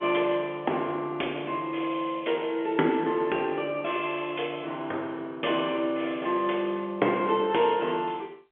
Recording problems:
telephone audio; 280 Hz to 3.4 kHz, G.711

